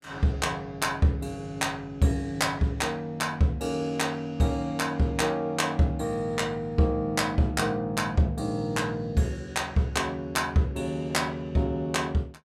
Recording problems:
none

